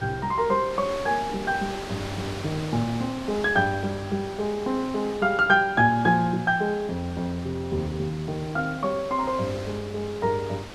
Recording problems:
wind noise; below 3.3 kHz, SNR 13 dB

